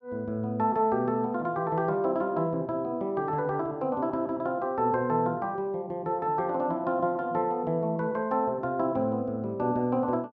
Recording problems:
none

